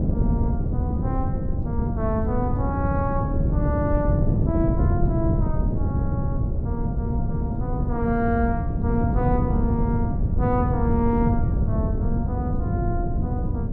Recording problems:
wind on the microphone; below 160 Hz, SNR -4 dB

